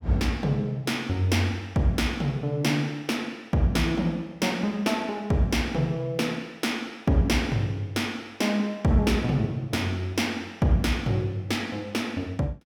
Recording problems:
none

